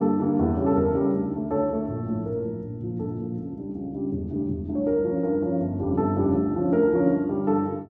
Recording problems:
none

